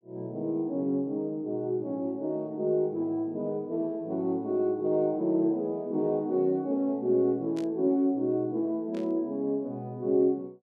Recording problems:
static burst; at 7.5 s and at 9 s; peak -14 dB vs average level

